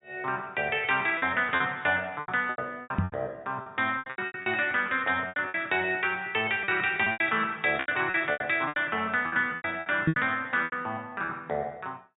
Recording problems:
treble cut off; nothing above 4 kHz
lost packets; 14% of the sound replaced, filled with repeated pitch periods
microphone bump; at 3 s and at 10 s; peak +7 dB vs average level

